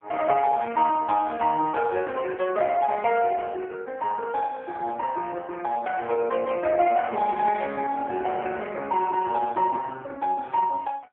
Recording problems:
telephone audio; 320 Hz to 3.3 kHz, AMR-NB

